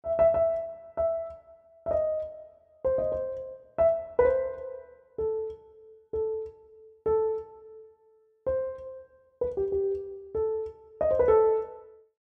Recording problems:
none

